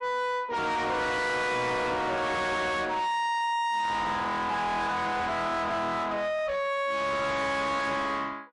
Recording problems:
codec artefacts; MP3, log-spectral distance 2 dB, nothing above 11 kHz
distortion; soft clipping, signal-to-distortion ratio 5 dB

